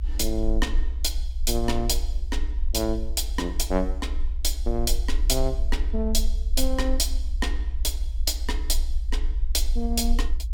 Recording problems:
rumble; below 58 Hz, strongest tone 22 Hz, SNR 1 dB

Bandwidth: 17 kHz